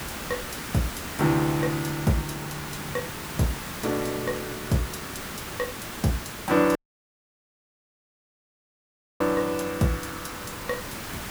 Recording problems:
hiss; slope -3 dB per octave, SNR 6 dB
audio cutting out; at 7 s for 2.5 s

